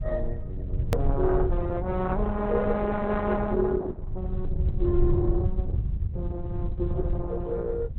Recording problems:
codec artefacts; Opus, log-spectral distance 2 dB, nothing above 18.9 kHz
rumble; below 92 Hz, SNR 2 dB
hard cut with a click; at 1 s

